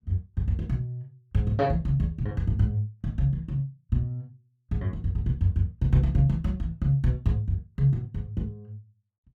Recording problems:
none

